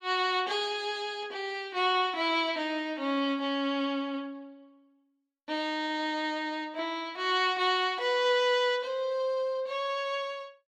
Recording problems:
none

